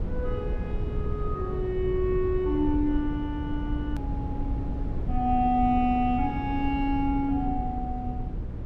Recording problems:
hum; 60 Hz, harmonics up to 300 Hz, SNR 13 dB
low-frequency rumble; below 120 Hz, SNR 5 dB
click at an edit; at 4 s

